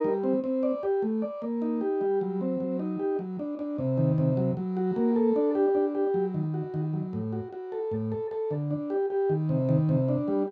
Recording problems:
none

